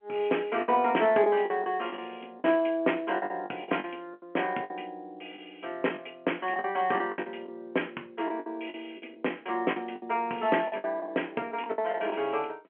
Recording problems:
phone line; 240 Hz to 3.2 kHz, G.711
lost packets; 11% of the sound replaced, filled with the last packet

